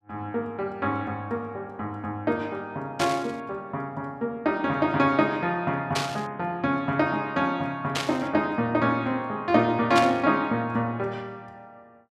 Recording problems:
static burst; 4 times, first at 3 s; peak +3 dB vs average level

